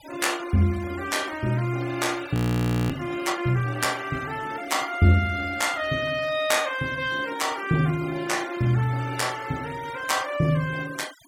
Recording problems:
denoising artefacts; signal-to-artefact ratio 18 dB
audio freezing; at 2.5 s for 0.5 s

